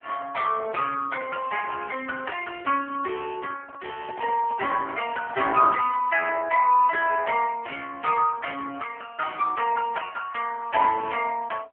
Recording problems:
phone line; 370 Hz to 2.8 kHz, AMR-NB
crackle; from 1 to 3 s and from 4 to 6.5 s; loose cable, SNR 27 dB
microphone handling noise; from 3.5 to 6 s; peak -9 dB vs average level

